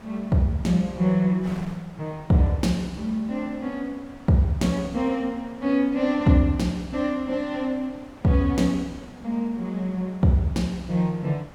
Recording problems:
wind on the microphone; below 1.2 kHz, SNR 22 dB

